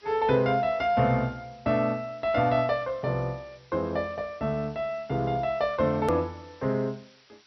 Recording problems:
lossy compression; MP2, log-spectral distance 5 dB, nothing above 13.1 kHz
hiss; slope +2 dB per octave, SNR 29 dB
hard cut with a click; at 6 s

